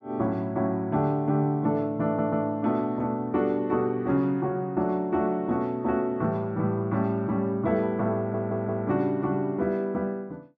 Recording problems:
audio stuttering; at 2 s and at 8 s

